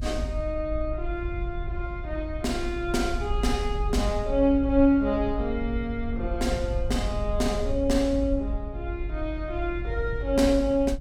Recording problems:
rumble; below 66 Hz, SNR 6 dB

